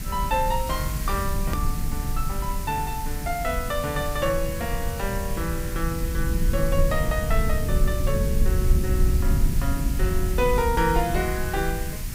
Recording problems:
hiss; slope +1 dB per octave, SNR 9 dB
low-frequency rumble; below 80 Hz, SNR 0 dB
edit click; at 1.5 s

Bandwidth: 15.5 kHz